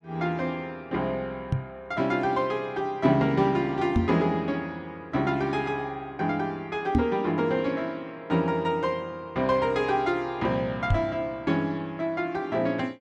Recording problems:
knock on the microphone; 4 times, first at 1.5 s; peak +7 dB vs average level

